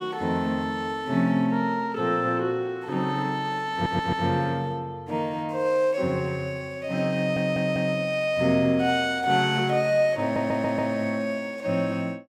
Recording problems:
stutter; at 3.5 s, at 7 s and at 10 s

